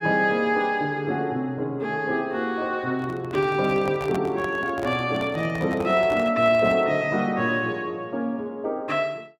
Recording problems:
microphone handling noise; from 3 to 7 s; peak -5 dB vs average level

